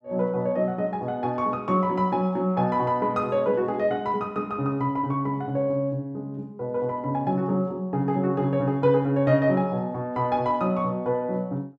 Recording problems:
none

